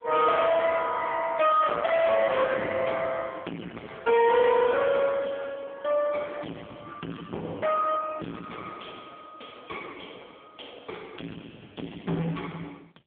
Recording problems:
telephone audio; 170 Hz to 3.5 kHz, AMR-NB
distortion; soft clipping, signal-to-distortion ratio 7 dB

